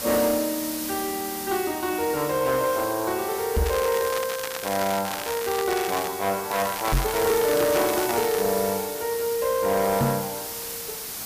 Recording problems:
distorted audio; hard clipping, uneven, signal-to-distortion ratio 11 dB
hiss; slope 0 dB per octave, SNR 7 dB
microphone thump; at 3.5 s, at 7 s and at 10 s; peak +5 dB vs average level
crackling; from 3.5 to 6 s and from 6.5 to 8.5 s; loose cable, SNR 9 dB

